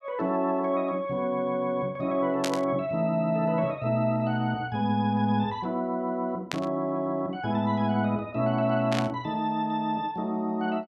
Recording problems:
static burst; at 2.5 s, at 6.5 s and at 9 s; peak +1 dB vs average level

